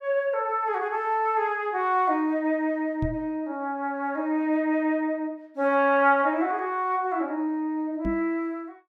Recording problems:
knock on the microphone; at 3 s and at 8 s; peak -1 dB vs average level

